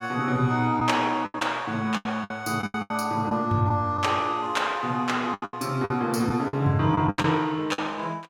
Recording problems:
lost packets; 11% of the sound replaced, filled with the last packet

